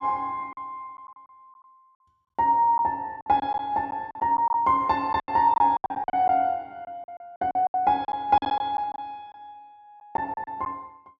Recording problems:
packet loss; 12% of the sound replaced, filled with silence

